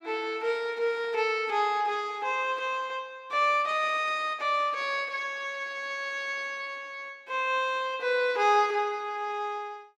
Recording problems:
none

